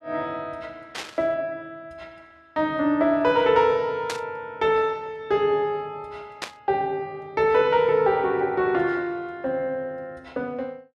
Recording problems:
burst of static; at 1 s, at 4 s and at 6.5 s; peak -2 dB vs average level

